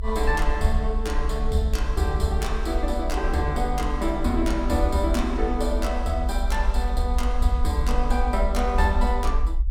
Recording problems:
low-frequency rumble; below 56 Hz, SNR 1 dB

